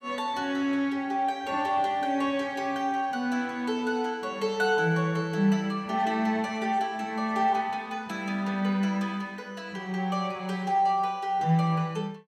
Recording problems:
none

